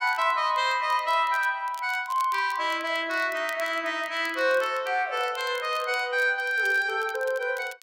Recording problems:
crackle; vinyl, SNR 22 dB

